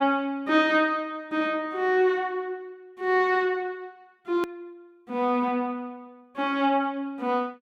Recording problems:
hard cut with a click; at 4.5 s

